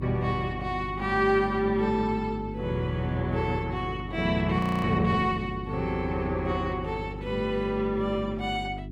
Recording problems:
hum; 50 Hz, harmonics up to 400 Hz, SNR 10 dB
frozen audio; at 4.5 s

